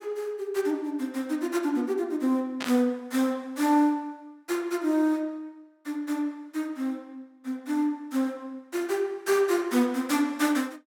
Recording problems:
burst of static; at 2.5 s; peak -2 dB vs average level

